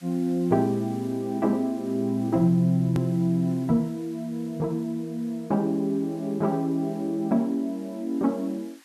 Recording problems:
hiss; SNR 27 dB
hard cut with a click; at 3 s

